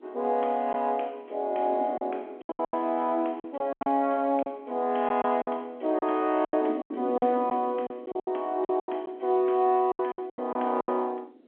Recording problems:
telephone audio; 220 Hz to 3.4 kHz, G.711
wind noise; below 390 Hz, SNR 18 dB
packet loss; 12% of the sound replaced, filled with silence

